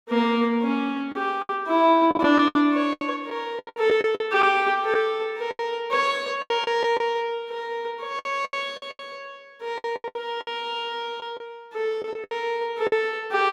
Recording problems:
lost packets; 12% of the sound replaced, filled with the last packet

